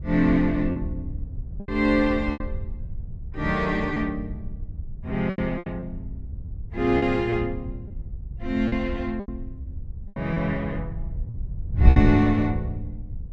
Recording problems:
wind noise; below 90 Hz, SNR 7 dB
lost packets; 7% of the sound replaced, filled with repeated pitch periods

